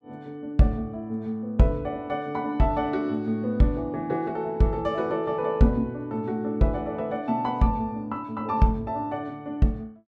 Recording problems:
none

